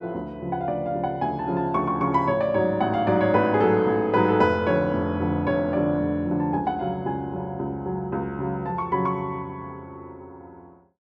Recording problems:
none

